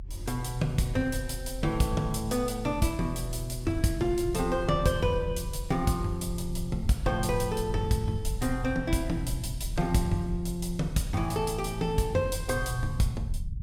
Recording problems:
rumble; below 80 Hz, strongest tone 40 Hz, SNR 8 dB

